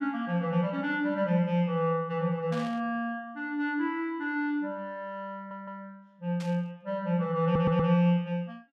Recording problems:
burst of static; at 2.5 s and at 6.5 s; peak -11 dB vs average level
audio stuttering; at 5.5 s and at 7.5 s

